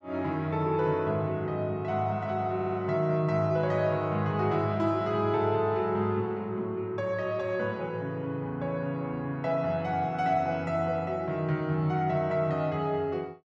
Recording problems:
audio stuttering; at 2.5 s

